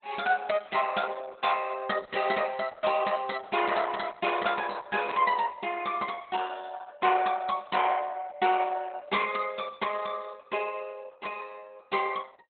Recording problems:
codec artefacts; Opus, log-spectral distance 5 dB, nothing above 4 kHz
burst of static; at 5 s; peak -4 dB vs average level

